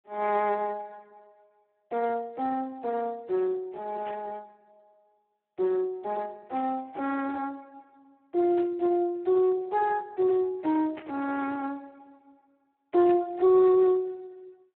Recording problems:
telephone audio; 320 Hz to 2.3 kHz, Speex
distortion; soft clipping, signal-to-distortion ratio 14 dB
static burst; 5 times, first at 4 s; peak -11 dB vs average level

